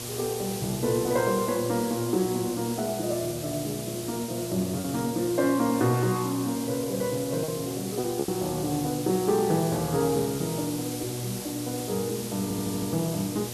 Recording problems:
mains hum; 60 Hz, harmonics up to 840 Hz, SNR 11 dB
hiss; SNR 8 dB
lost packets; 2% of the sound replaced, filled with repeated pitch periods
audio stuttering; at 12 s

